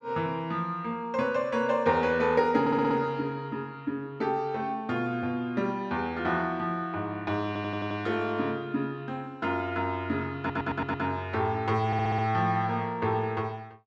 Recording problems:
audio stuttering; 4 times, first at 2.5 s

